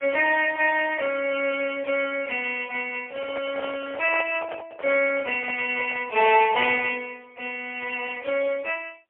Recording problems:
phone line; 320 Hz to 3.2 kHz, AMR-NB, then MP3
microphone handling noise; from 3 to 6.5 s; peak -7 dB vs average level

